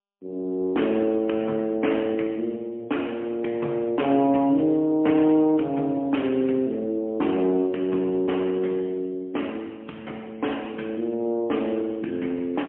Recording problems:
phone line; 170 Hz to 3.2 kHz, AMR-NB, then MP3

